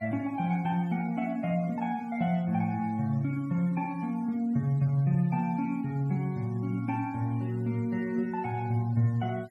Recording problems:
denoising artefacts; signal-to-artefact ratio 27 dB

